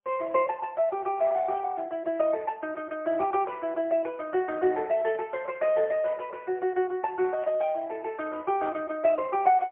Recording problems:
telephone audio; 220 Hz to 3.3 kHz, AMR-NB, then MP3
static burst; at 1.5 s, at 5 s and at 7.5 s; peak -16 dB vs average level

